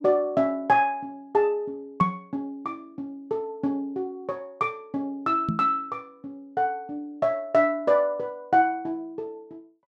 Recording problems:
microphone bump; at 2 s and at 5.5 s; peak +6 dB vs average level

